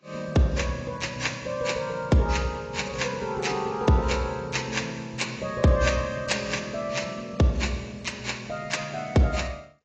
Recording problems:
codec artefacts; AAC, log-spectral distance 5 dB, nothing above 7.3 kHz

